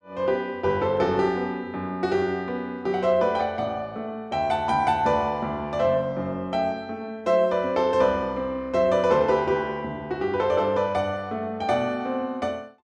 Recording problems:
none

